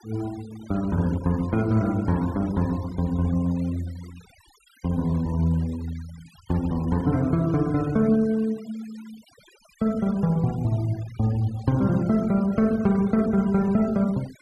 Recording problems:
denoising artefacts; signal-to-artefact ratio 22 dB

